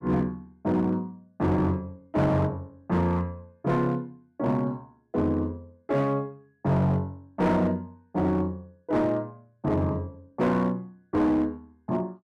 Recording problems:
distortion; hard clipping, signal-to-distortion ratio 11 dB

